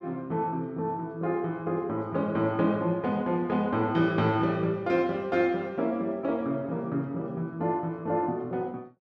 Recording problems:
none

